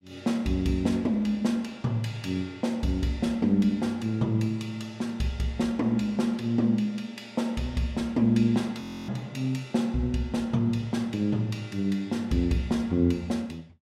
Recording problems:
frozen audio; at 9 s

